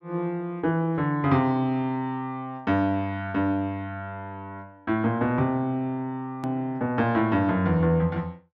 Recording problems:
click at an edit; at 6.5 s

